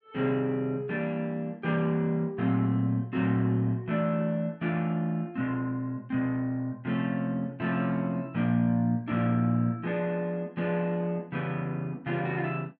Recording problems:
none

